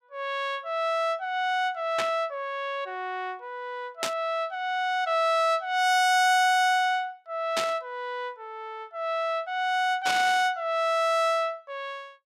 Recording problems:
burst of static; 4 times, first at 2 s; peak +2 dB vs average level

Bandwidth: 16.5 kHz